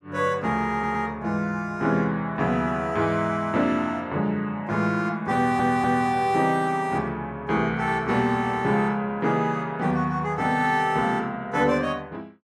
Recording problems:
audio stuttering; at 0.5 s and at 5.5 s

